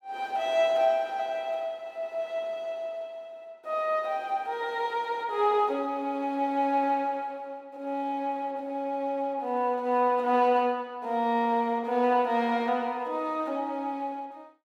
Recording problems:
none

